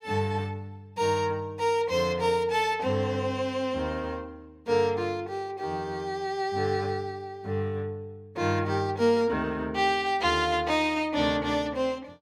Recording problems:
none

